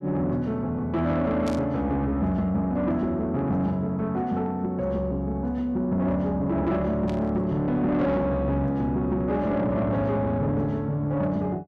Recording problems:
distorted audio; soft clipping, signal-to-distortion ratio 12 dB
burst of static; at 1.5 s and at 7 s; peak -9 dB vs average level

